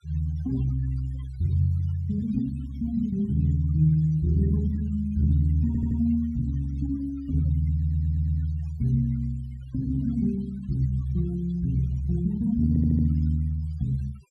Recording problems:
denoising artefacts; signal-to-artefact ratio 24 dB
audio stuttering; at 5.5 s, at 7.5 s and at 13 s

